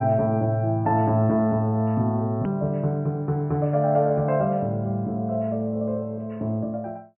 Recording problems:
treble missing; nothing above 3.1 kHz
edit click; at 2.5 s

